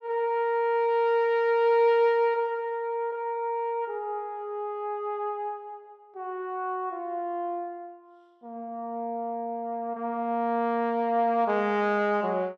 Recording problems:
none

